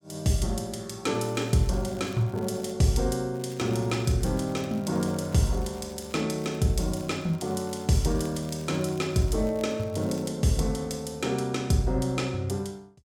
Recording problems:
crackling; from 1 to 2.5 s, from 3.5 to 6 s and from 6.5 to 10 s; loose cable, SNR 24 dB

